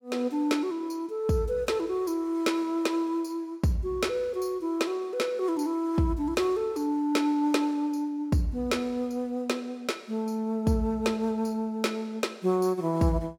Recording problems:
none

